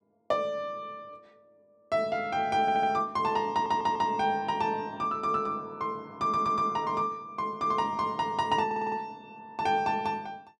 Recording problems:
stutter; 4 times, first at 2.5 s

